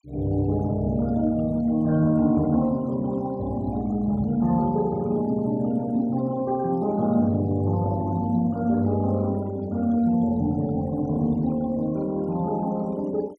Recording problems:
noise reduction artefacts; signal-to-artefact ratio 27 dB

